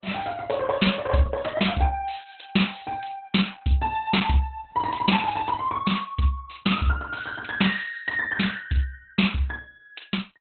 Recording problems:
lossy codec; Opus, log-spectral distance 7 dB, nothing above 4.1 kHz

